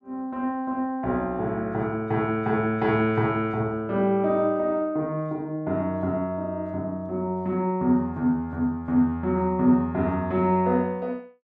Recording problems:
none

